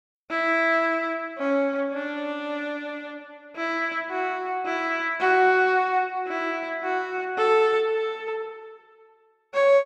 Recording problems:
none

